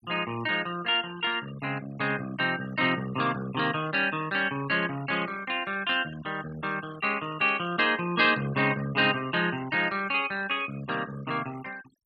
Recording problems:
denoising artefacts; signal-to-artefact ratio 19 dB

